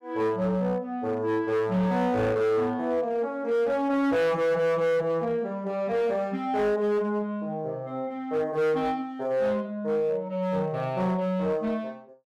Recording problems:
distorted audio; hard clipping, signal-to-distortion ratio 11 dB

